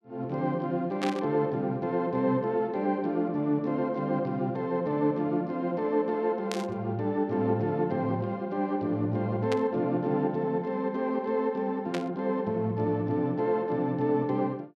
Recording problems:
burst of static; 4 times, first at 1 s; peak -3 dB vs average level

